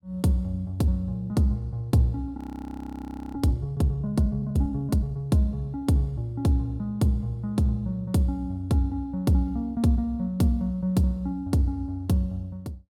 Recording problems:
audio freezing; at 2.5 s for 1 s

